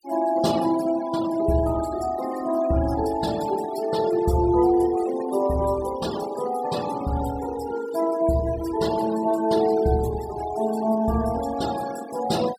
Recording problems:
denoising artefacts; signal-to-artefact ratio 15 dB

